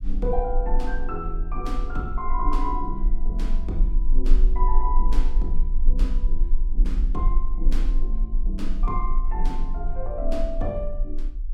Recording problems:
rumble; below 34 Hz, strongest tone 20 Hz, SNR -5 dB

